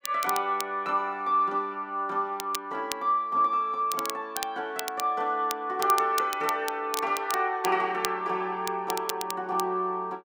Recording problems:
crackle; vinyl, SNR 10 dB

